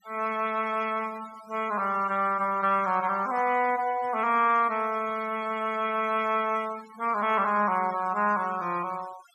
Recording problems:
denoising artefacts; signal-to-artefact ratio 20 dB

